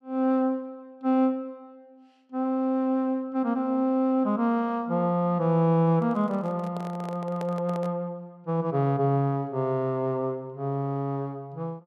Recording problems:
microphone handling noise; from 6 to 8 s; peak -8 dB vs average level

